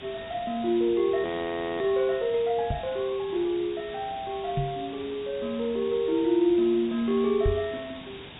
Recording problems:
low-pass filter; nothing above 4 kHz
hiss; SNR 15 dB
frozen audio; at 1.5 s for 0.5 s
knock on the microphone; at 2.5 s, at 4.5 s and at 7.5 s; peak +3 dB vs average level

